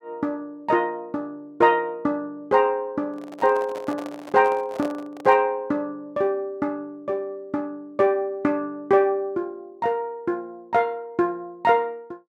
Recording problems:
handling noise; from 3 to 5.5 s; peak -7 dB vs average level

